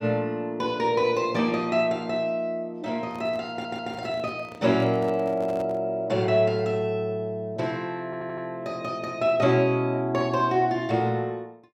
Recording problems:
handling noise; from 3 to 6 s; peak -11 dB vs average level
audio stuttering; at 3.5 s and at 8 s

